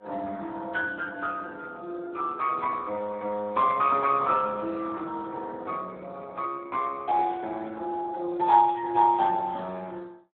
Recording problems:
phone line; 240 Hz to 3.7 kHz, Speex

